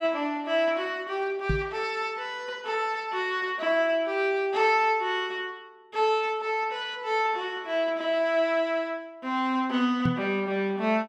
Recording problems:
microphone bump; at 1.5 s and at 10 s; peak +3 dB vs average level

